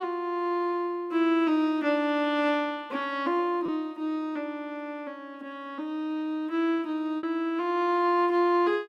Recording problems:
packet loss; 1.2% of the sound replaced, filled with repeated pitch periods

